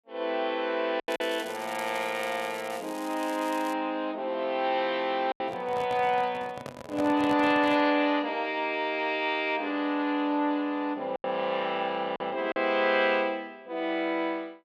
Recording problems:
lost packets; 3% of the sound replaced, filled with silence
crackle; from 1 to 3.5 s; loose cable, SNR 18 dB
handling noise; from 5.5 to 8 s; peak -4 dB vs average level

